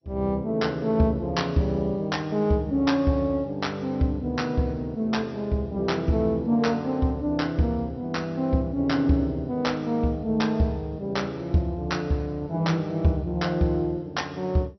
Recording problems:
lossy codec; MP2, log-spectral distance 2 dB, nothing above 5.8 kHz

